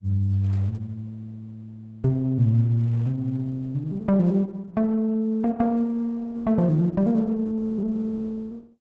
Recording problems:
lossy codec; Opus, log-spectral distance 2 dB, nothing above 7.3 kHz

